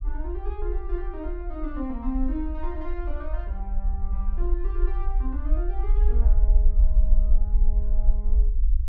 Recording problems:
rumble; below 48 Hz, SNR -10 dB

